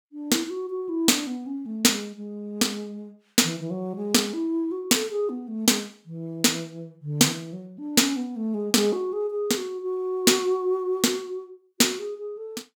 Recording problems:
none

